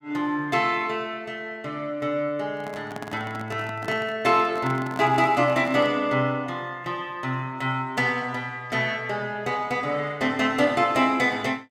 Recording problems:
microphone handling noise; from 2.5 to 6 s; peak -7 dB vs average level

